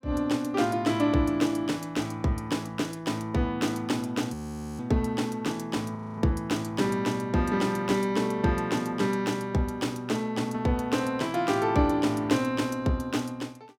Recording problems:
audio freezing; at 4.5 s and at 6 s

